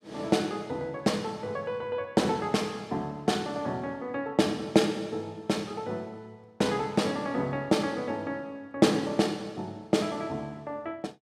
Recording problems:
none

